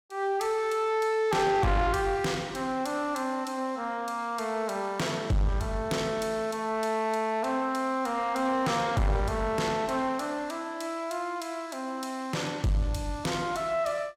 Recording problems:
distorted audio; soft clipping, signal-to-distortion ratio 10 dB

